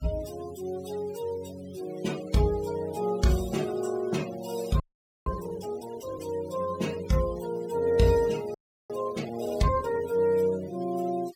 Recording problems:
noise reduction artefacts; signal-to-artefact ratio 17 dB
audio freezing; at 5 s and at 8.5 s

